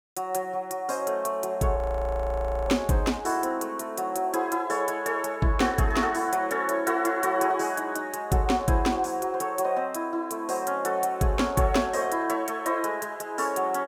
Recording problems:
frozen audio; at 2 s for 1 s

